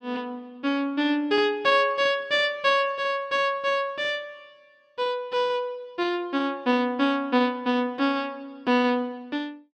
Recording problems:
none

